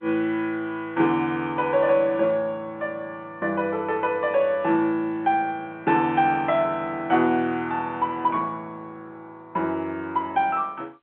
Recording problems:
phone line; 190 Hz to 3.6 kHz, G.711

